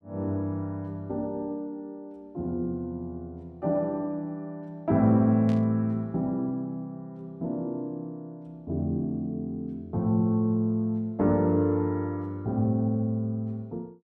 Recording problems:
burst of static; at 5.5 s; peak -14 dB vs average level

